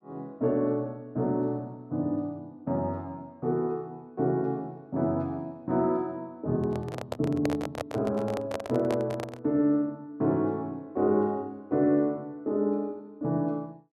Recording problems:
microphone handling noise; from 6.5 to 9.5 s; peak +2 dB vs average level

